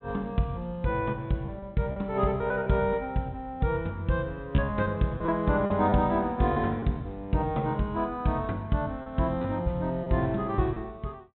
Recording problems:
low-pass filter; nothing above 3.9 kHz
packet loss; 5% of the sound replaced, filled with repeated pitch periods

